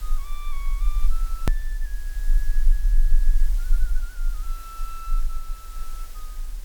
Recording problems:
hiss; slope -1 dB per octave, SNR 2 dB
rumble; below 34 Hz, strongest tone 24 Hz, SNR -17 dB
click at an edit; at 1.5 s

